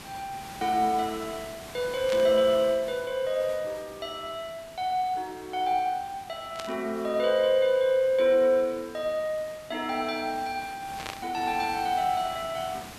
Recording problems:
background hiss; slope -3 dB per octave, SNR 17 dB
burst of static; at 2 s, at 6.5 s and at 11 s; peak -5 dB vs average level

